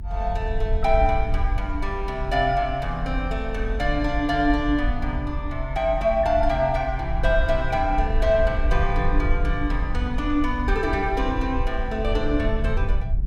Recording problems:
rumble; below 58 Hz, SNR 4 dB

